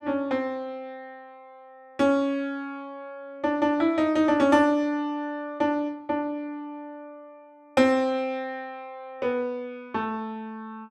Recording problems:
none

